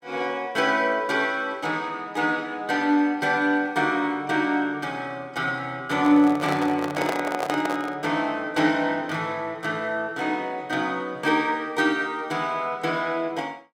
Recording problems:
handling noise; from 6 to 8 s; peak +1 dB vs average level

